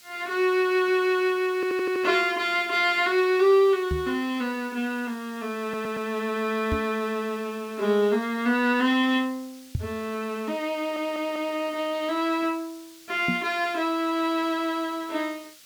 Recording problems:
background hiss; SNR 24 dB
stutter; at 1.5 s, at 5.5 s and at 11 s
microphone bump; 4 times, first at 4 s; peak +1 dB vs average level

